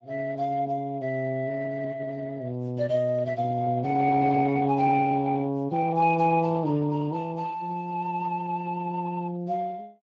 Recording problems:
lossy codec; Speex, log-spectral distance 2 dB

